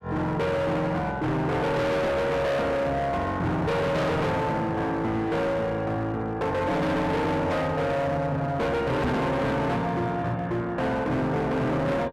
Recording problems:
distorted audio; hard clipping, uneven, signal-to-distortion ratio 6 dB
microphone thump; at 9 s; peak +2 dB vs average level

